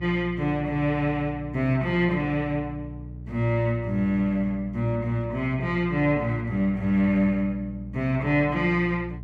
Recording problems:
hum; 60 Hz, harmonics up to 420 Hz, SNR 13 dB

